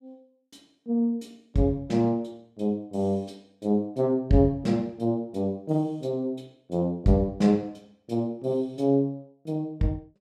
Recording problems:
none

